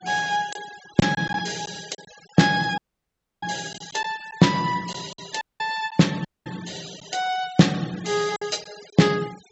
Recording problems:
treble cut off; nothing above 7.7 kHz
noise reduction artefacts; signal-to-artefact ratio 19 dB
lost packets; 4% of the sound replaced, filled with silence
dropout; at 3 s for 0.5 s, at 5.5 s and at 6.5 s

